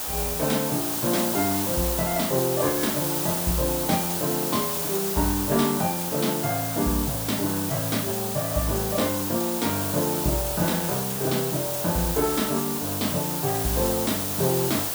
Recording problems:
background hiss; SNR 0 dB

